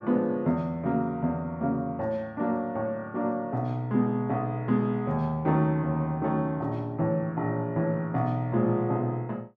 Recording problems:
none

